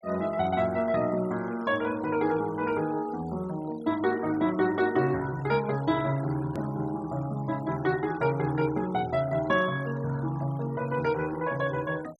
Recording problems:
denoising artefacts; signal-to-artefact ratio 20 dB
click at an edit; at 6.5 s

